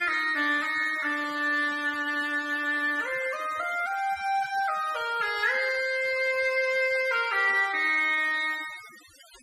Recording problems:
denoising artefacts; signal-to-artefact ratio 18 dB

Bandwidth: 13 kHz